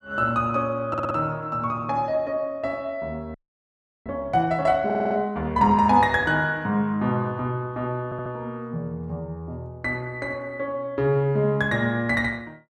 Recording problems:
stutter; at 1 s, at 5 s and at 8 s
frozen audio; at 3.5 s for 0.5 s

